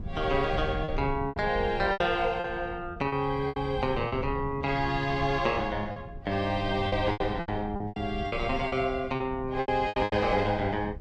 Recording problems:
wind noise; below 140 Hz, SNR 11 dB
lost packets; 11% of the sound replaced, filled with repeated pitch periods

